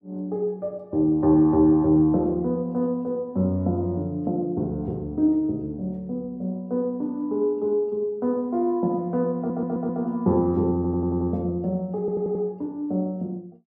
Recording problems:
audio stuttering; at 9.5 s, at 11 s and at 12 s

